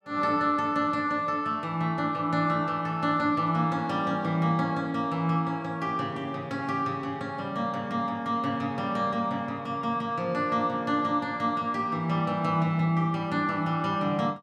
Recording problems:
none

